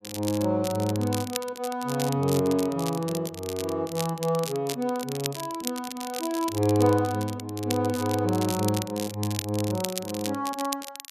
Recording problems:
crackle; vinyl, SNR 9 dB

